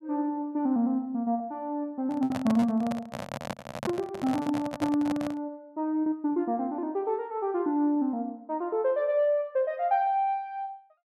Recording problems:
lost packets; 3% of the sound replaced, filled with repeated pitch periods
microphone handling noise; from 2 to 5.5 s; peak 0 dB vs average level

